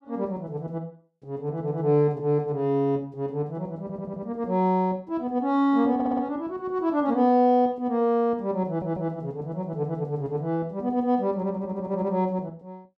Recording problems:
stutter; at 4 s, at 6 s and at 8.5 s

